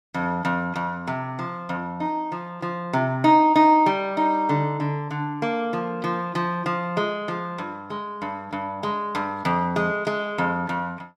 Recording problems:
none

